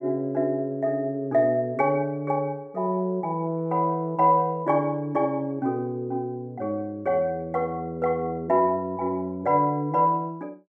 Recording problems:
none

